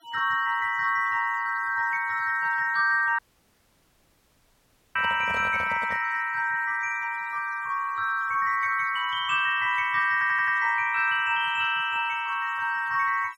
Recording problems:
noise reduction artefacts; signal-to-artefact ratio 26 dB
dropout; at 3 s for 2 s
handling noise; from 5 to 6 s; peak -10 dB vs average level
stutter; at 10 s

